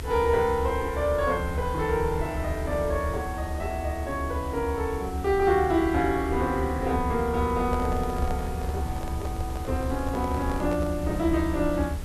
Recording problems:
hiss; slope -4 dB per octave, SNR 16 dB
rumble; below 78 Hz, SNR 6 dB
microphone handling noise; from 7.5 to 11 s; peak -5 dB vs average level

